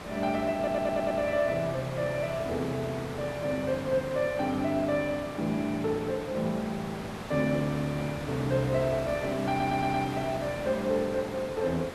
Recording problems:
background hiss; slope -6 dB per octave, SNR 9 dB
audio stuttering; at 0.5 s and at 9.5 s

